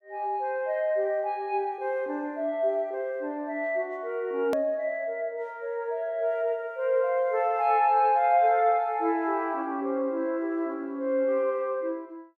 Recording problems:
click at an edit; at 4.5 s

